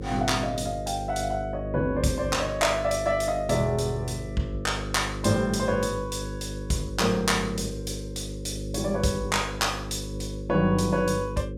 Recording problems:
hum; 50 Hz, harmonics up to 550 Hz, SNR 8 dB

